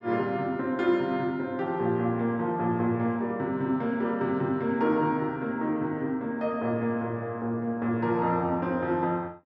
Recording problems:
none

